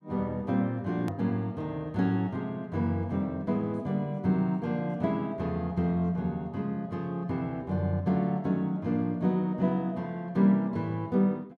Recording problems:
edit click; at 1 s

